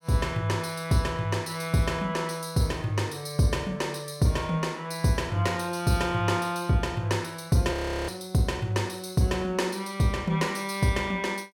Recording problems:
audio freezing; at 7.5 s

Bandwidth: 17 kHz